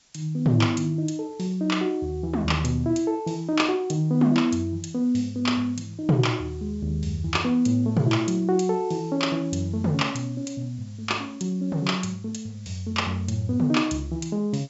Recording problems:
low-pass filter; nothing above 8 kHz
background hiss; slope +1 dB per octave, SNR 30 dB

